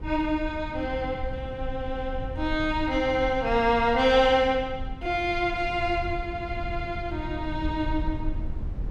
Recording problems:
rumble; below 84 Hz, SNR 10 dB

